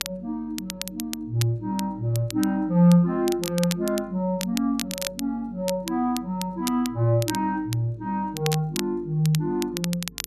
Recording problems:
hum; 50 Hz, harmonics up to 450 Hz, SNR 25 dB
crackle; vinyl, SNR 10 dB

